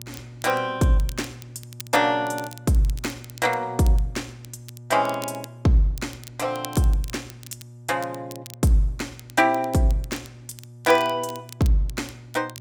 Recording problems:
mains hum; 60 Hz, harmonics up to 600 Hz, SNR 19 dB
crackle; vinyl, SNR 19 dB

